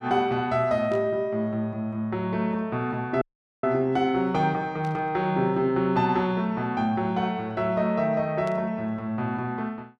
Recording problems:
static burst; at 1 s, at 5 s and at 8.5 s; peak -15 dB vs average level
audio cutting out; at 3 s

